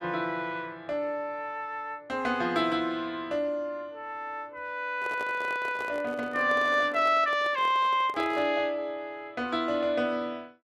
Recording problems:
microphone handling noise; from 5 to 8.5 s; peak -7 dB vs average level

